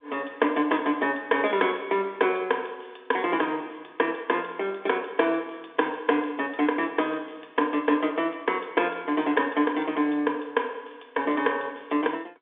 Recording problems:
phone line; 240 Hz to 3.6 kHz, G.711

